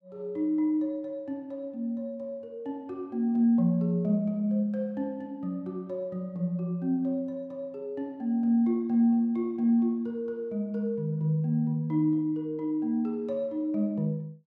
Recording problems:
none

